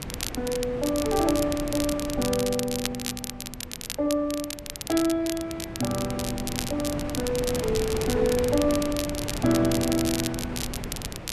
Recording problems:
wind noise; below 550 Hz, SNR 9 dB
crackling; vinyl, SNR 7 dB

